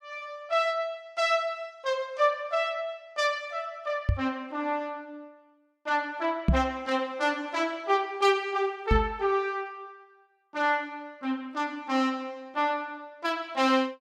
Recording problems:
knock on the microphone; at 4 s, at 6.5 s and at 9 s; peak +9 dB vs average level

